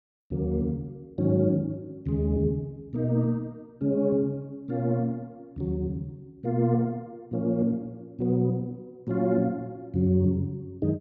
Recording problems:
none

